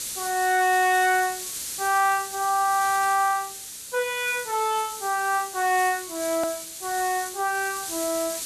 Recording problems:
background hiss; SNR 9 dB
hard cut with a click; at 6.5 s

